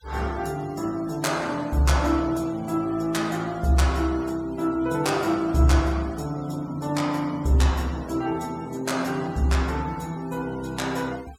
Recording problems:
denoising artefacts; signal-to-artefact ratio 22 dB

